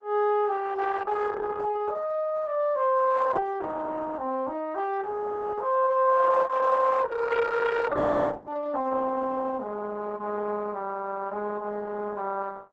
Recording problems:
codec artefacts; Opus, log-spectral distance 4 dB, nothing above 7.8 kHz

